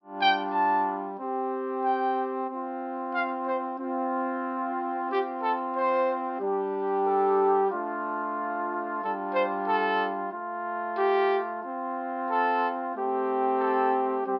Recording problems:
low-pass filter; nothing above 5.5 kHz

